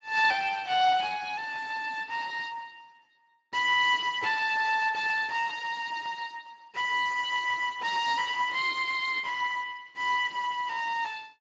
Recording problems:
lossy codec; Speex, log-spectral distance 5 dB

